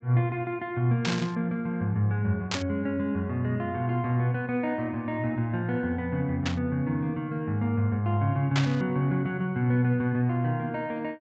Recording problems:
low-pass filter; nothing above 8 kHz
static burst; 4 times, first at 1 s; peak +2 dB vs average level

